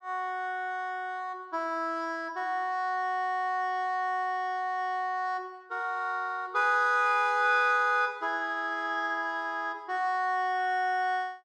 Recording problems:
none

